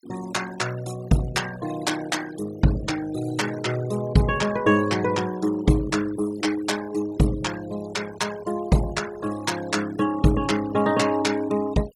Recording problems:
denoising artefacts; signal-to-artefact ratio 16 dB

